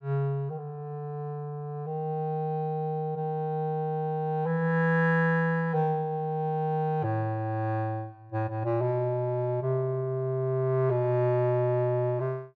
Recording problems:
none

